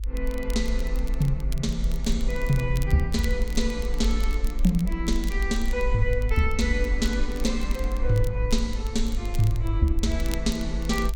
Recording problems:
rumble; below 50 Hz, SNR 2 dB
crackle; vinyl, SNR 18 dB

